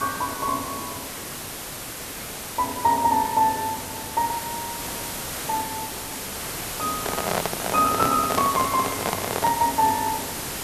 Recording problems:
background hiss; slope -2 dB per octave, SNR 5 dB
microphone handling noise; from 7 to 9.5 s; peak +3 dB vs average level

